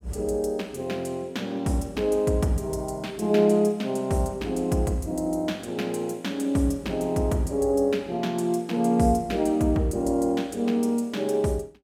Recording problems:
none

